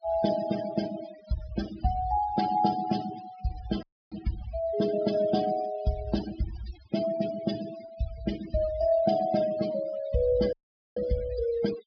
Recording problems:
treble cut off; nothing above 5.5 kHz
denoising artefacts; signal-to-artefact ratio 13 dB
audio cutting out; at 4 s and at 11 s

